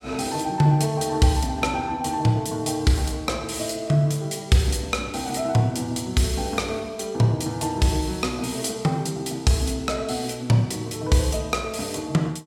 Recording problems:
none

